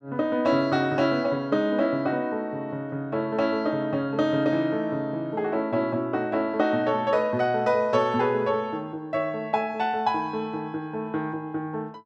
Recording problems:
none

